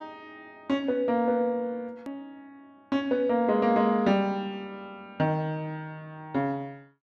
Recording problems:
hard cut with a click; at 2 s

